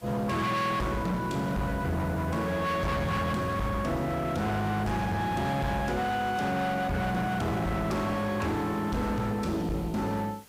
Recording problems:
distortion; hard clipping, signal-to-distortion ratio 8 dB
hiss; slope -2 dB per octave, SNR 24 dB

